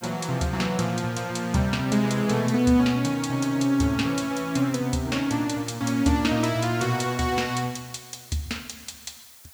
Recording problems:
background hiss; slope +1 dB per octave, SNR 24 dB

